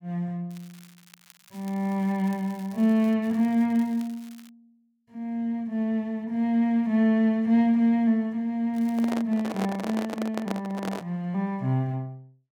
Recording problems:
crackle; until 3 s, from 3 to 4.5 s and at 8.5 s; loose cable, SNR 27 dB
microphone handling noise; from 9 to 11 s; peak -3 dB vs average level

